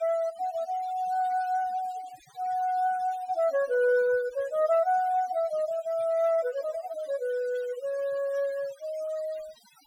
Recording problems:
denoising artefacts; signal-to-artefact ratio 22 dB

